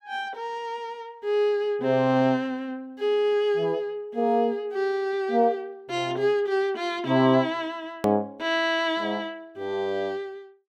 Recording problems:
hard cut with a click; at 8 s

